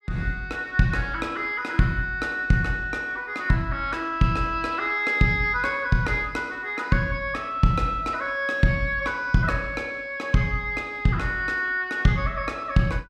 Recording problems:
none

